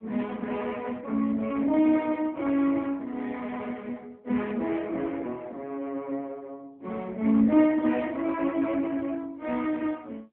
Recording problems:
telephone audio; 190 Hz to 3.4 kHz, AMR-NB

